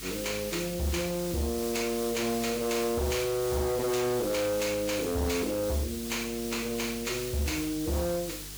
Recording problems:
distorted audio; hard clipping, signal-to-distortion ratio 10 dB
hum; 50 Hz, harmonics up to 450 Hz, SNR 19 dB
hiss; slope +3 dB per octave, SNR 8 dB

